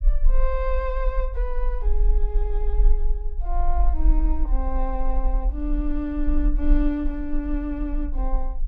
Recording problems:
rumble; below 42 Hz, strongest tone 24 Hz, SNR -4 dB

